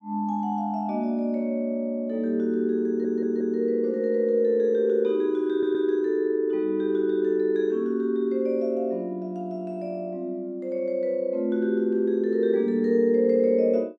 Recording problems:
stutter; at 3 s and at 5.5 s

